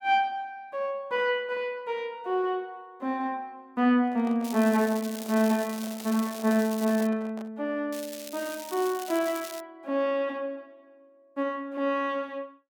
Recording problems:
handling noise; from 4 to 7.5 s; peak -11 dB vs average level
crackling; from 4.5 to 7 s and from 8 to 9.5 s; loose cable, SNR 13 dB

